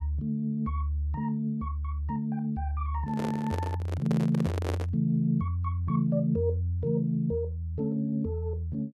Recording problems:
handling noise; from 3 to 5 s; peak 0 dB vs average level

